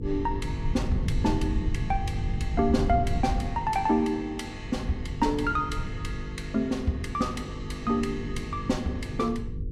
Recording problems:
hum; 50 Hz, harmonics up to 500 Hz, SNR 11 dB
low-frequency rumble; below 120 Hz, SNR 5 dB

